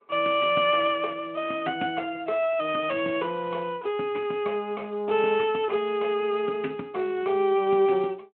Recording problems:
phone line; 220 Hz to 3.1 kHz, Speex

